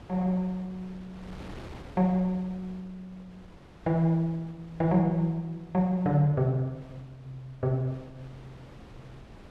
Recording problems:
wind noise; below 640 Hz, SNR 21 dB

